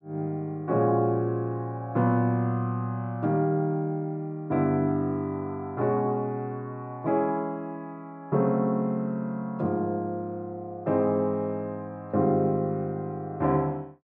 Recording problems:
none

